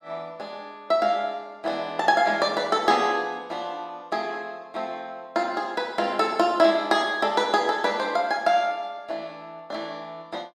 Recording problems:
none

